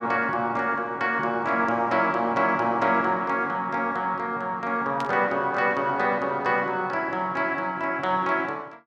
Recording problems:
static burst; at 5 s; peak -8 dB vs average level

